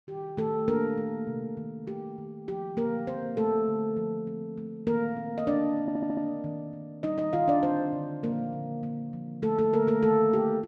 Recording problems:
stutter; at 6 s

